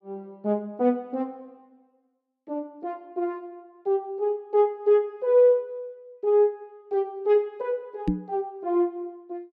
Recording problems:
microphone bump; at 8 s; peak +5 dB vs average level

